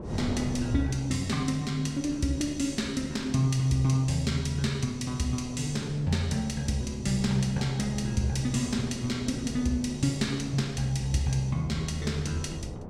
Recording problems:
wind noise; below 430 Hz, SNR 14 dB

